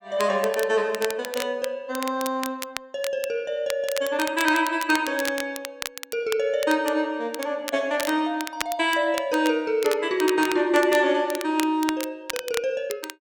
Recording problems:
crackling; vinyl, SNR 11 dB

